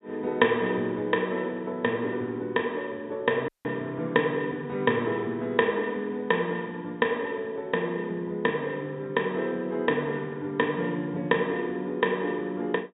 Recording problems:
treble cut off; nothing above 4 kHz
audio cutting out; at 3.5 s

